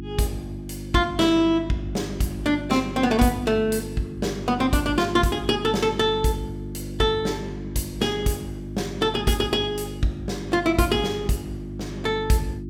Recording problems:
electrical hum; 50 Hz, harmonics up to 350 Hz, SNR 10 dB

